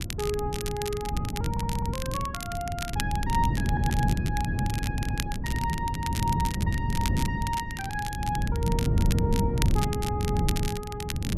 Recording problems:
wind noise; below 180 Hz, SNR -4 dB
crackle; vinyl, SNR 5 dB
stutter; at 1.5 s, at 3.5 s and at 4.5 s

